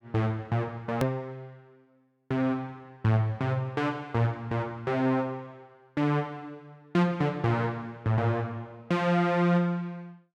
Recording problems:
click at an edit; at 1 s

